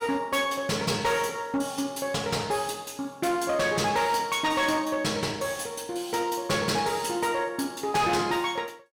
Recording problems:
distorted audio; hard clipping, signal-to-distortion ratio 10 dB

